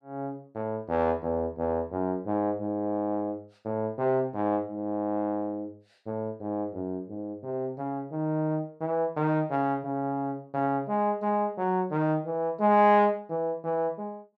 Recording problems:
none

